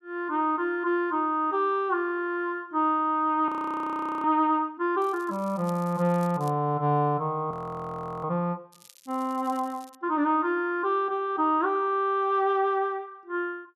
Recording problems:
audio freezing; at 3.5 s for 1 s and at 7.5 s for 0.5 s
crackling; from 5 to 6.5 s and from 8.5 to 10 s; loose cable, SNR 26 dB

